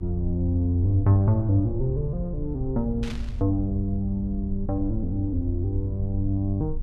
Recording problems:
rumble; below 64 Hz, SNR 8 dB
static burst; at 3 s; peak -9 dB vs average level

